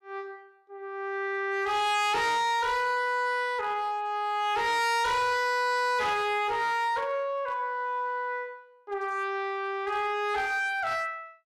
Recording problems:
distortion; hard clipping, signal-to-distortion ratio 8 dB

